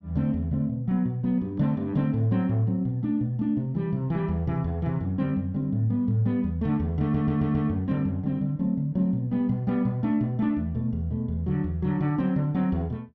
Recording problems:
stutter; at 7 s

